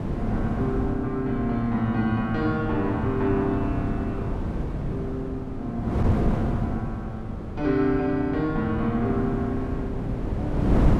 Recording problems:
wind noise; below 290 Hz, SNR 3 dB

